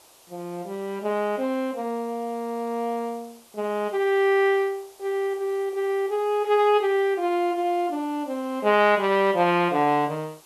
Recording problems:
background hiss; SNR 27 dB

